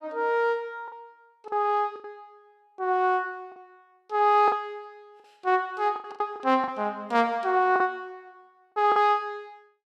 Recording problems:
packet loss; 8% of the sound replaced, filled with the last packet

